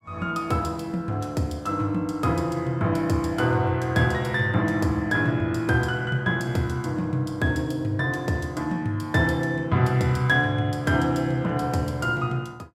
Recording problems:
none

